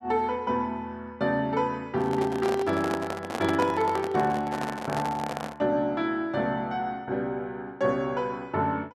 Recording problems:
handling noise; from 2 to 5.5 s; peak 0 dB vs average level

